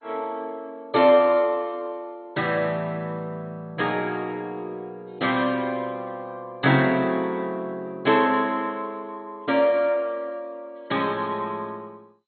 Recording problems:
codec artefacts; MP2, log-spectral distance 2 dB, nothing above 4.1 kHz

